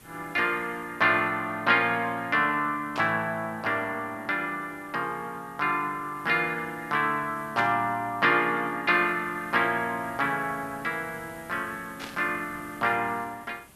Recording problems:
hiss; slope -4 dB per octave, SNR 24 dB
burst of static; at 3 s, at 7.5 s and at 12 s; peak -6 dB vs average level

